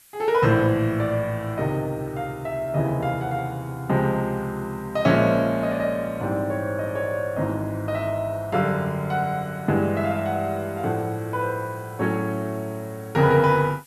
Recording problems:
hiss; slope +2 dB per octave, SNR 27 dB

